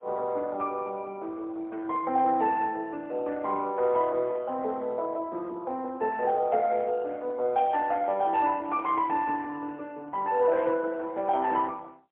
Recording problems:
phone line; 320 Hz to 3.6 kHz, AMR-NB, then MP3

